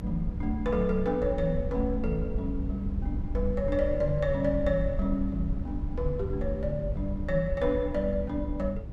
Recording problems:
low-frequency rumble; below 88 Hz, SNR 5 dB

